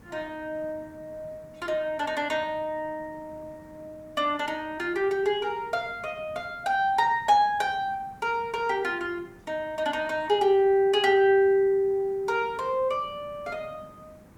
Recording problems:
hiss; slope -7 dB per octave, SNR 26 dB

